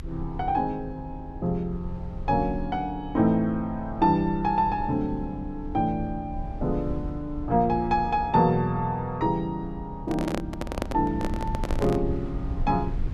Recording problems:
rumble; below 84 Hz, SNR 11 dB
handling noise; from 10 to 12 s; peak +1 dB vs average level

